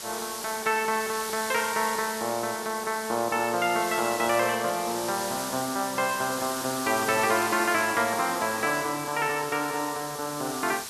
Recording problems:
hiss; slope +1 dB per octave, SNR 7 dB

